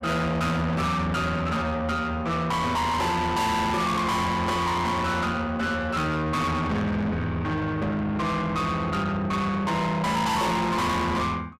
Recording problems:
distortion; soft clipping, signal-to-distortion ratio 6 dB

